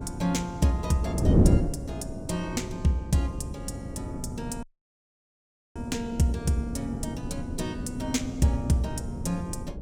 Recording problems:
wind on the microphone; below 260 Hz, SNR 2 dB
dropout; at 4.5 s for 1 s

